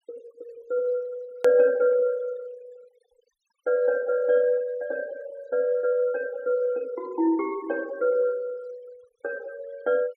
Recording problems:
noise reduction artefacts; signal-to-artefact ratio 26 dB
hard cut with a click; at 1.5 s

